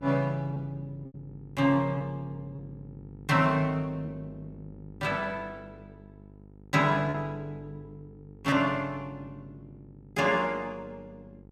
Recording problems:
electrical hum; 50 Hz, harmonics up to 900 Hz, SNR 20 dB
lost packets; 2% of the sound replaced, filled with repeated pitch periods

